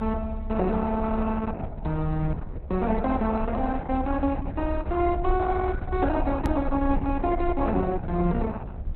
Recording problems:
lossy codec; Opus, log-spectral distance 3 dB
hum; 50 Hz, harmonics up to 750 Hz, SNR 19 dB
rumble; below 70 Hz, strongest tone 30 Hz, SNR 7 dB
edit click; at 6.5 s

